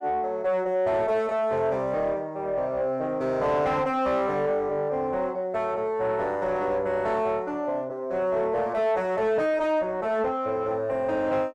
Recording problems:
distorted audio; soft clipping, signal-to-distortion ratio 10 dB

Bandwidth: 12.5 kHz